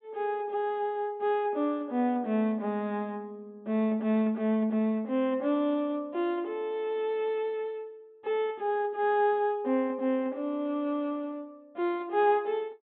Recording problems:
low-pass filter; nothing above 4 kHz

